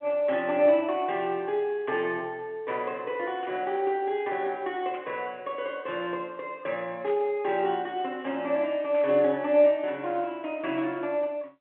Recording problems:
telephone audio; 190 Hz to 3.3 kHz, G.711
burst of static; 4 times, first at 3.5 s; peak -13 dB vs average level

